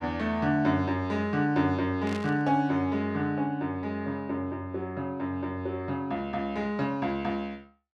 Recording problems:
static burst; at 2 s; peak -8 dB vs average level

